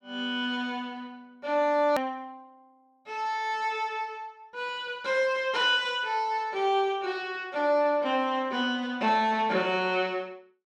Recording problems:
edit click; at 2 s

